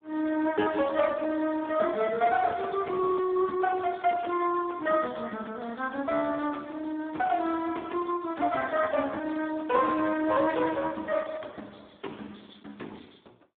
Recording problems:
telephone audio; 220 Hz to 2.9 kHz, Speex

